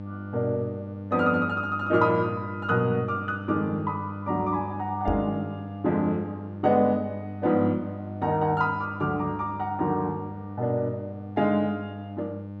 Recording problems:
hum; 50 Hz, harmonics up to 900 Hz, SNR 10 dB
knock on the microphone; at 5 s; peak +1 dB vs average level

